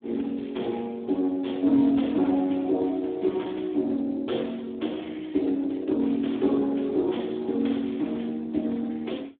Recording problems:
phone line; 220 Hz to 3.5 kHz, Speex

